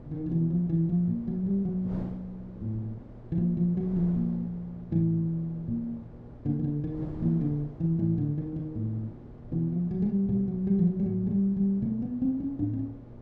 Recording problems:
hum; 60 Hz, harmonics up to 840 Hz, SNR 21 dB
wind on the microphone; below 360 Hz, SNR 18 dB

